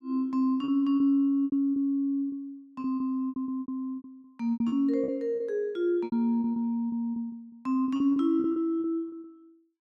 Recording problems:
lost packets; 16% of the sound replaced, filled with repeated pitch periods

